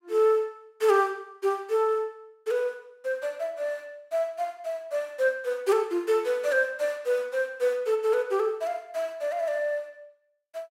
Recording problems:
none

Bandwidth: 16 kHz